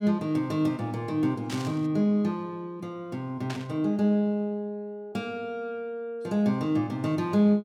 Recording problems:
burst of static; at 1.5 s and at 3.5 s; peak -5 dB vs average level

